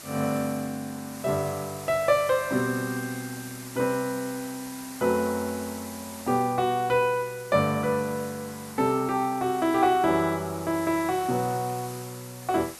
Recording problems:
hiss; slope -1 dB per octave, SNR 15 dB

